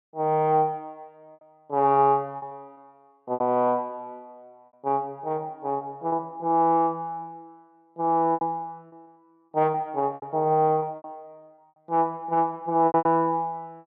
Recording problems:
packet loss; 7% of the sound replaced, filled with repeated pitch periods

